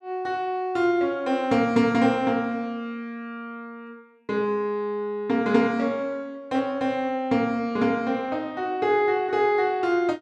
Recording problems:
none

